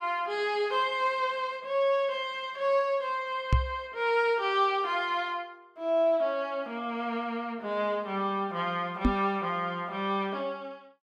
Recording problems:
microphone thump; at 3.5 s and at 9 s; peak +8 dB vs average level

